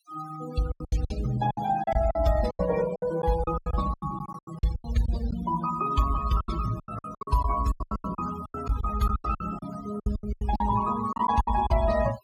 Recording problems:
noise reduction artefacts; signal-to-artefact ratio 13 dB
packet loss; 18% of the sound replaced, filled with silence

